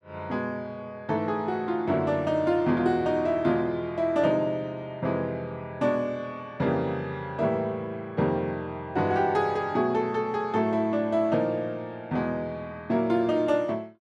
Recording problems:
none

